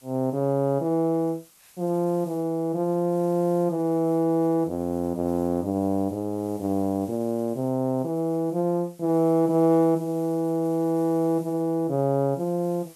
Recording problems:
background hiss; slope 0 dB per octave, SNR 27 dB

